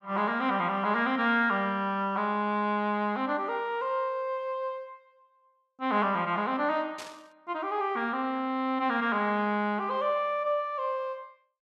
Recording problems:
static burst; at 7 s; peak -9 dB vs average level

